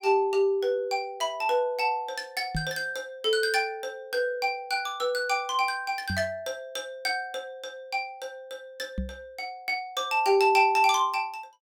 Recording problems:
knock on the microphone; at 2.5 s, at 6 s and at 9 s; peak -1 dB vs average level

